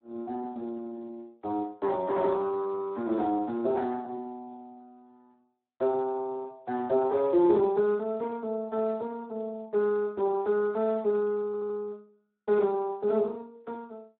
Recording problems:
phone line; 260 Hz to 2.1 kHz, Speex
audio stuttering; at 11 s

